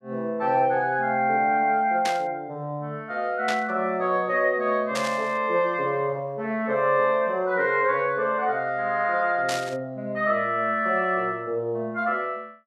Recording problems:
static burst; 4 times, first at 2 s; peak -2 dB vs average level

